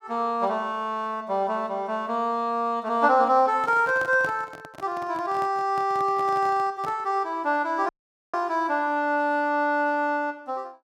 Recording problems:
handling noise; from 3.5 to 7 s; peak -9 dB vs average level
dropout; at 8 s

